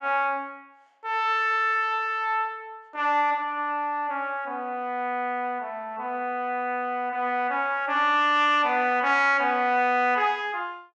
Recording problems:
none

